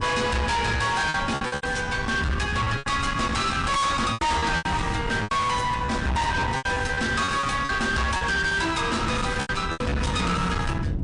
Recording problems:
lossy compression; MP3, log-spectral distance 3 dB, nothing above 8.7 kHz
distortion; hard clipping, uneven, signal-to-distortion ratio 5 dB
wind noise; below 610 Hz, SNR 8 dB
packet loss; 11% of the sound replaced, filled with repeated pitch periods

